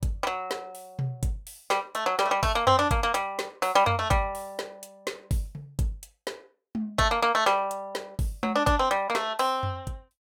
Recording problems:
none

